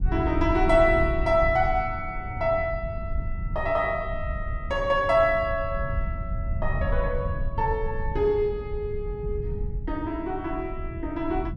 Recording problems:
low-frequency rumble; below 90 Hz, SNR 7 dB

